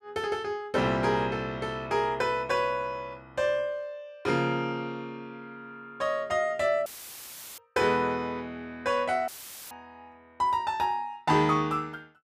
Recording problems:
dropout; at 7 s for 0.5 s and at 9.5 s; filled with static

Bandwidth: 15 kHz